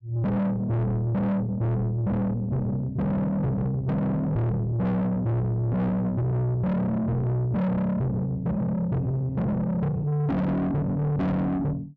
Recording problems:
distorted audio; soft clipping, signal-to-distortion ratio 6 dB

